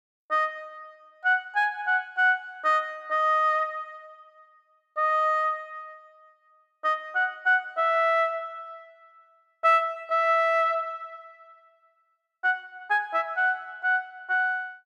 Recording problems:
none

